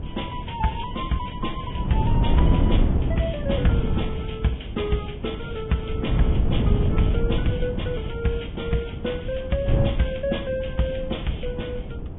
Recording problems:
treble cut off; nothing above 3.5 kHz
lossy compression; Vorbis, log-spectral distance 4 dB
wind on the microphone; below 160 Hz, SNR -1 dB

